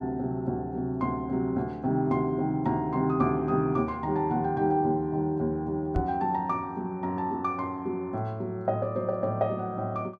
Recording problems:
microphone bump; at 6 s; peak +2 dB vs average level

